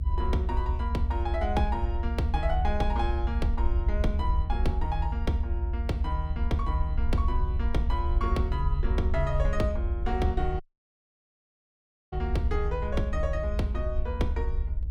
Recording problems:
rumble; below 72 Hz, SNR -2 dB
dropout; at 11 s for 1.5 s

